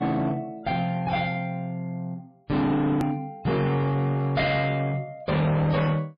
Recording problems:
codec artefacts; MP3, log-spectral distance 2 dB, nothing above 14.1 kHz
distortion; hard clipping, signal-to-distortion ratio 7 dB
click at an edit; at 3 s

